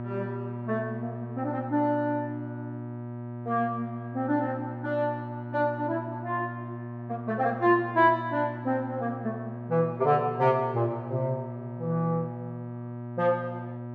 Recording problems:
electrical hum; 60 Hz, harmonics up to 1.3 kHz, SNR 9 dB

